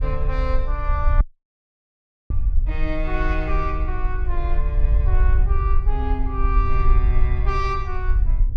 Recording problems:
wind noise; below 56 Hz, SNR -6 dB
dropout; at 1 s for 1 s

